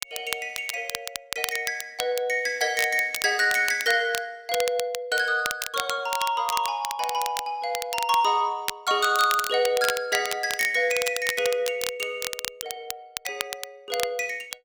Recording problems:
crackling; vinyl, SNR 8 dB

